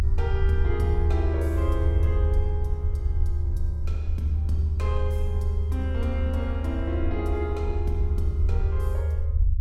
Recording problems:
low-frequency rumble; below 78 Hz, strongest tone 76 Hz, SNR -7 dB

